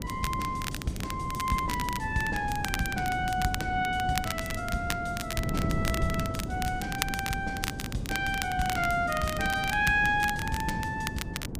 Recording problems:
wind on the microphone; below 250 Hz, SNR 6 dB
crackling; vinyl, SNR 8 dB

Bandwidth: 15 kHz